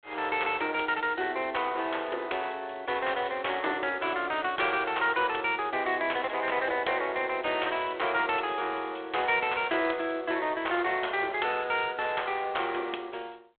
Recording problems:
phone line; 300 Hz to 3.6 kHz, G.726

